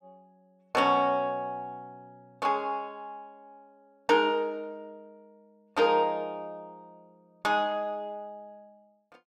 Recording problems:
none

